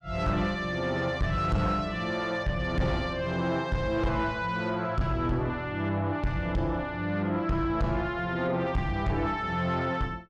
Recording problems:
distortion; soft clipping, signal-to-distortion ratio 10 dB

